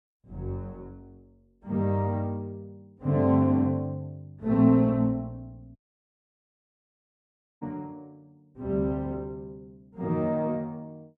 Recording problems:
audio cutting out; at 6 s for 2 s

